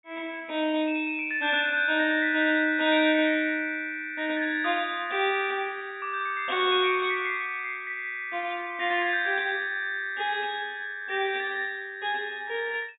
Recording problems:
treble missing; nothing above 4 kHz

